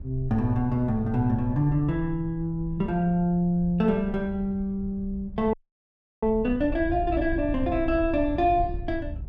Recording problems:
wind on the microphone; below 80 Hz, SNR 12 dB
audio freezing; at 5.5 s for 0.5 s

